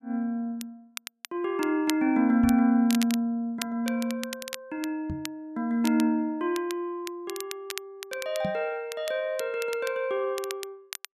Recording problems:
crackle; vinyl, SNR 13 dB
microphone bump; at 2.5 s, at 5 s and at 8.5 s; peak -2 dB vs average level

